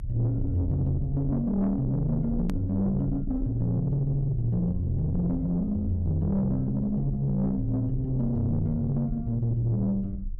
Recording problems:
distortion; soft clipping, signal-to-distortion ratio 11 dB
low-frequency rumble; below 70 Hz, SNR 10 dB
click at an edit; at 2.5 s

